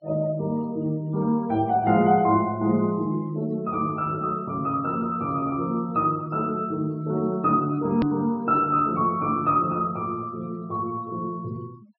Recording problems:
treble missing; nothing above 5.4 kHz
noise reduction artefacts; signal-to-artefact ratio 28 dB
hard cut with a click; at 8 s

